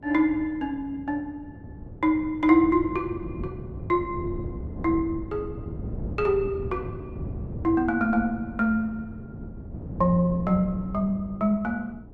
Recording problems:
wind noise; below 240 Hz, SNR 12 dB

